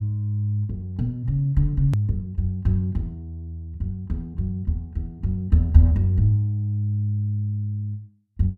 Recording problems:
click at an edit; at 2 s

